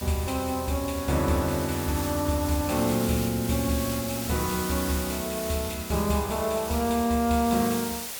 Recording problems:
background hiss; slope 0 dB per octave, SNR 8 dB

